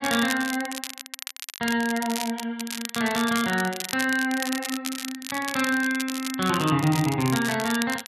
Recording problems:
crackle; vinyl, SNR 8 dB

